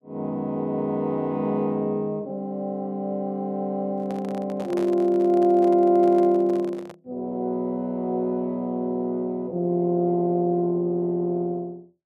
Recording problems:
handling noise; from 4 to 7 s; peak -8 dB vs average level

